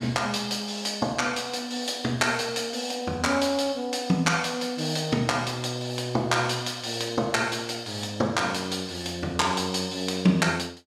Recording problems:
none

